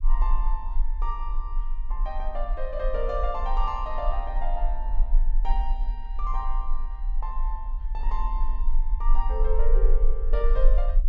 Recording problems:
rumble; below 36 Hz, strongest tone 20 Hz, SNR -5 dB

